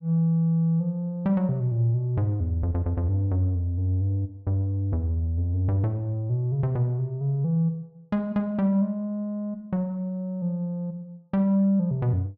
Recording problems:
none

